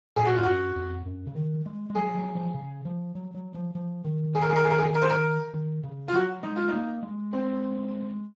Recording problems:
lossy codec; Speex, log-spectral distance 2 dB, nothing above 7.3 kHz

